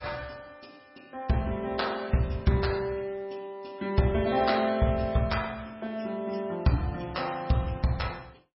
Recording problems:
lossy codec; MP3, log-spectral distance 5 dB, nothing above 5.5 kHz

